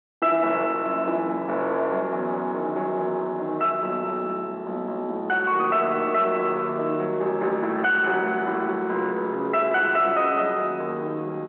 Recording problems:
telephone audio; 240 Hz to 3.3 kHz, G.711
distorted audio; soft clipping, signal-to-distortion ratio 10 dB

